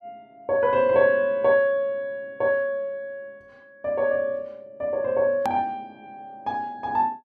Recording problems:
hard cut with a click; at 5.5 s

